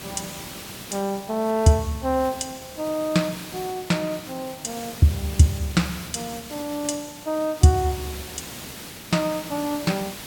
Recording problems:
hiss; slope -2 dB per octave, SNR 13 dB

